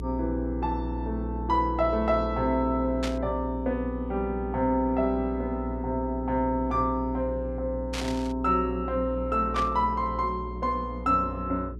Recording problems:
hum; 60 Hz, harmonics up to 420 Hz, SNR 8 dB
burst of static; at 3 s, at 8 s and at 9.5 s; peak -2 dB vs average level

